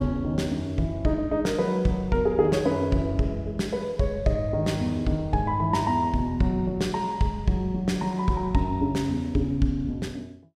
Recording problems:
none

